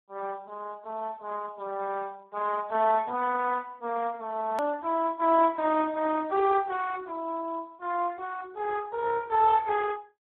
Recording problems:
telephone audio; 260 Hz to 2.2 kHz, Speex
click at an edit; at 4.5 s

